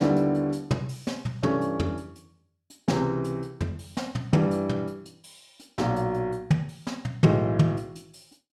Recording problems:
none

